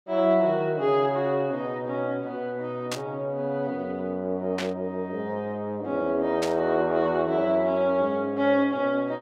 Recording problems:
static burst; at 3 s, at 4.5 s and at 6.5 s; peak -2 dB vs average level

